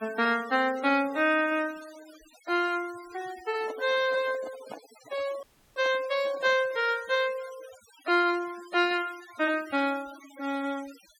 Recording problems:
noise reduction artefacts; signal-to-artefact ratio 20 dB
microphone handling noise; from 3.5 to 7 s; peak -9 dB vs average level
audio cutting out; at 5.5 s

